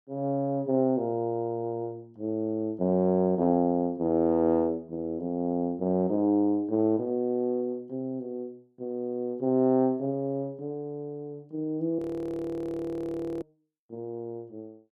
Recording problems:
frozen audio; at 12 s for 1.5 s

